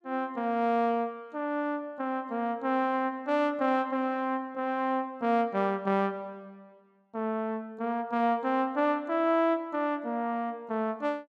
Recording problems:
none

